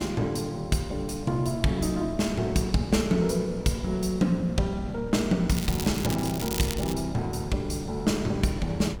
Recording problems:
wind noise; below 210 Hz, SNR 14 dB
crackling; from 5.5 to 7 s; loose cable, SNR 8 dB

